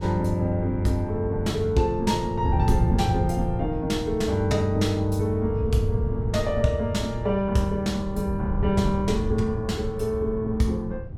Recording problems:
wind on the microphone; below 120 Hz, SNR 6 dB

